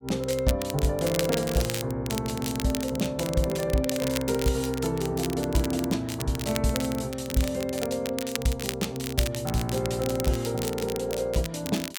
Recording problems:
crackle; vinyl, SNR 8 dB

